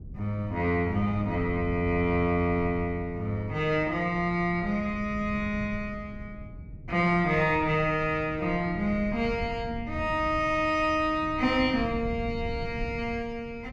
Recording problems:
rumble; below 150 Hz, SNR 13 dB

